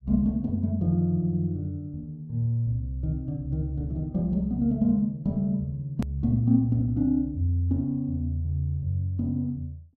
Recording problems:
hard cut with a click; at 6 s

